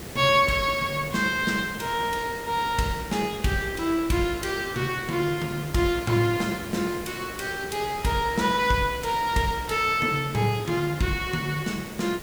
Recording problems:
background hiss; SNR 13 dB

